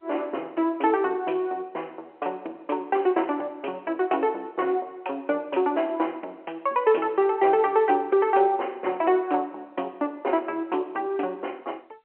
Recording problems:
phone line; 260 Hz to 3.1 kHz, G.711

